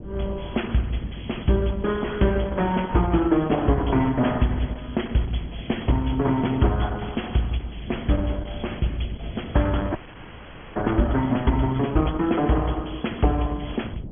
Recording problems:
treble missing; nothing above 3.4 kHz
lossy compression; Opus, log-spectral distance 6 dB
wind noise; below 230 Hz, SNR 16 dB
frozen audio; at 10 s for 1 s

